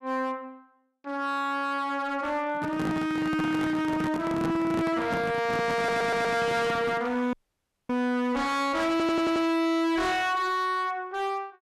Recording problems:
distortion; hard clipping, signal-to-distortion ratio 8 dB
microphone handling noise; from 2.5 to 7 s; peak +1 dB vs average level
audio stuttering; at 6 s and at 9 s
dropout; at 7.5 s for 0.5 s

